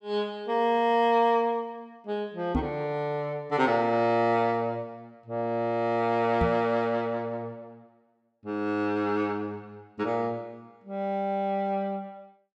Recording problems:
microphone thump; at 2.5 s and at 6.5 s; peak +4 dB vs average level

